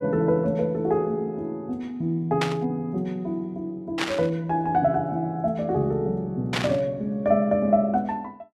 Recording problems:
static burst; at 2.5 s, at 4 s and at 6.5 s; peak +3 dB vs average level

